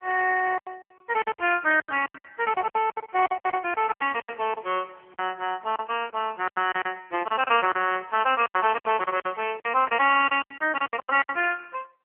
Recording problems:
phone line; 280 Hz to 3.1 kHz, AMR-NB
lost packets; 16% of the sound replaced, filled with silence

